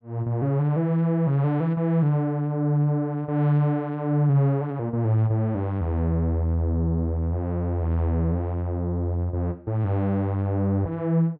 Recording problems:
none

